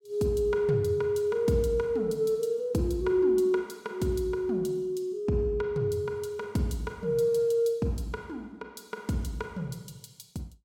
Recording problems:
none

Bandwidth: 17 kHz